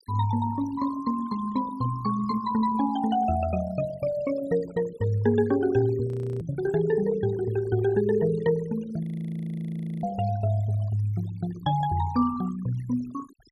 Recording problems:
denoising artefacts; signal-to-artefact ratio 18 dB
audio freezing; at 6 s and at 9 s for 1 s

